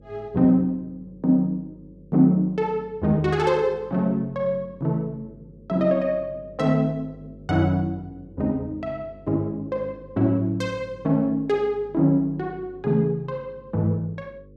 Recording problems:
hum; 50 Hz, harmonics up to 550 Hz, SNR 25 dB

